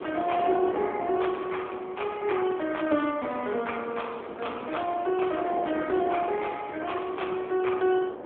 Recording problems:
telephone audio; 260 Hz to 3.4 kHz, AMR-NB
wind noise; below 720 Hz, SNR 10 dB

